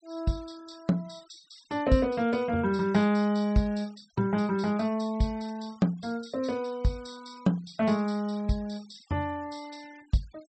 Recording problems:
low-pass filter; nothing above 8 kHz
denoising artefacts; signal-to-artefact ratio 25 dB

